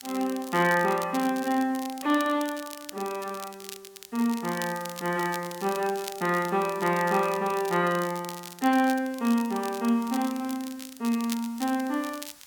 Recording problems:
background hiss; slope +1 dB per octave, SNR 26 dB
crackling; vinyl, SNR 15 dB

